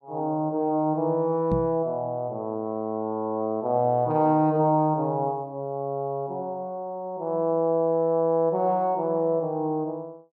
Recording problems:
microphone bump; at 1.5 s; peak +2 dB vs average level

